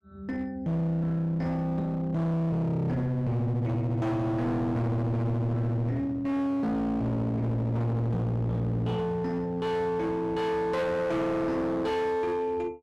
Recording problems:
distorted audio; hard clipping, uneven, signal-to-distortion ratio 7 dB

